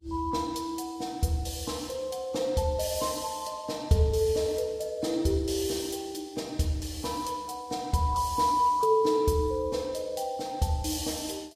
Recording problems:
codec artefacts; Vorbis, log-spectral distance 3 dB, nothing above 14.7 kHz

